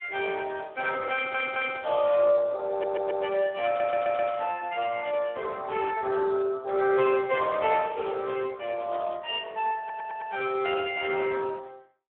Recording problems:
telephone audio; 320 Hz to 3.1 kHz, Speex
audio stuttering; 4 times, first at 1 s

